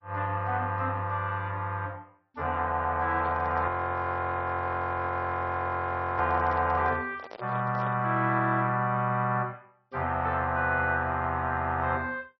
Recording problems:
lossy codec; MP3, log-spectral distance 2 dB, nothing above 5.2 kHz
handling noise; from 3 to 8 s; peak -9 dB vs average level
frozen audio; at 3.5 s for 2.5 s

